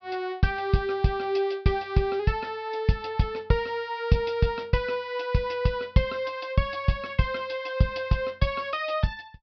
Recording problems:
low-pass filter; nothing above 5.5 kHz

